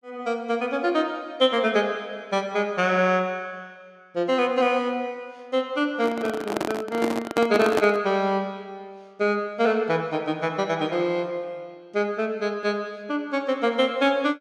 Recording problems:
handling noise; from 6 to 8 s; peak +3 dB vs average level

